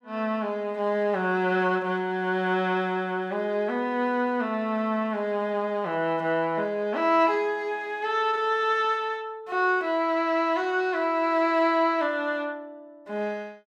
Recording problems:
none

